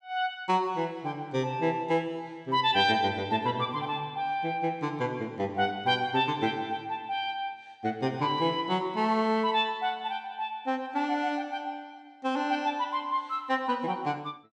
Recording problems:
none

